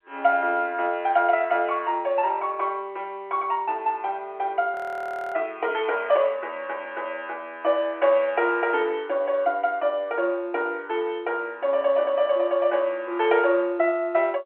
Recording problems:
telephone audio; 300 Hz to 3.3 kHz, G.711
audio freezing; at 4.5 s for 0.5 s

